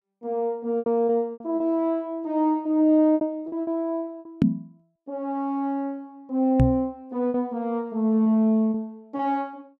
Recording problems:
lost packets; 7% of the sound replaced, filled with repeated pitch periods
microphone bump; at 4.5 s and at 6.5 s; peak +8 dB vs average level

